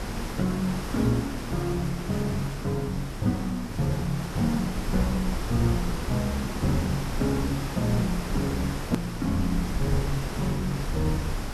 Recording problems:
hiss; slope -5 dB per octave, SNR 6 dB
rumble; below 60 Hz, SNR 10 dB
click at an edit; at 9 s

